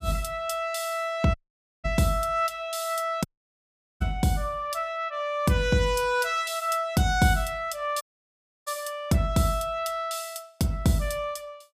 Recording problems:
dropout; at 1.5 s, at 3.5 s for 1 s and at 8 s for 0.5 s

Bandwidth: 15 kHz